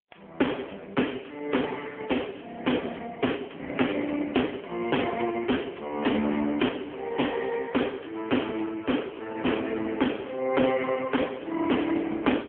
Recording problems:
phone line; 190 Hz to 3.3 kHz, AMR-NB
distorted audio; hard clipping, uneven, signal-to-distortion ratio 9 dB

